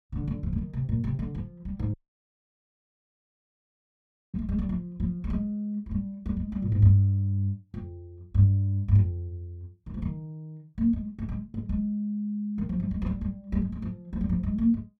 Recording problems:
audio cutting out; at 2 s for 2.5 s

